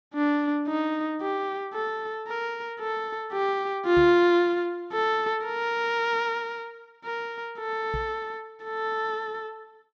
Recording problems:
microphone thump; at 4 s and at 8 s; peak -4 dB vs average level

